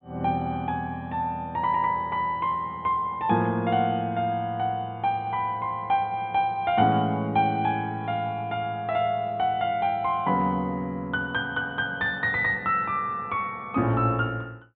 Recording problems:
treble missing; nothing above 4 kHz

